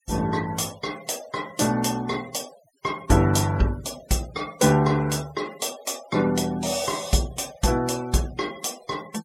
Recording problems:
denoising artefacts; signal-to-artefact ratio 18 dB

